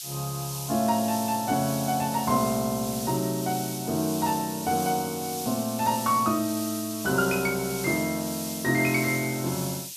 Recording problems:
hiss; SNR 7 dB

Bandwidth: 14 kHz